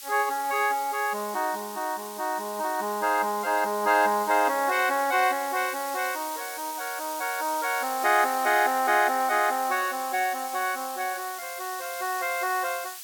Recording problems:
hiss; slope +5 dB per octave, SNR 11 dB

